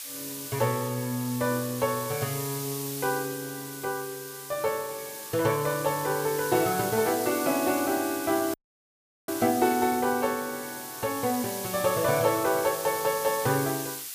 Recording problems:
hiss; slope +5 dB per octave, SNR 8 dB
dropout; at 8.5 s for 0.5 s

